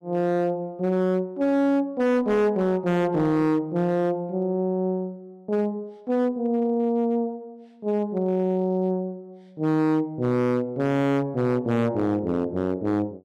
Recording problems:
distorted audio; hard clipping, signal-to-distortion ratio 10 dB

